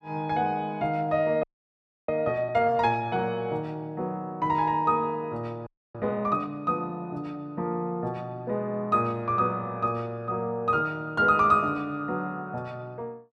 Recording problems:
frozen audio; at 1.5 s for 0.5 s and at 5.5 s

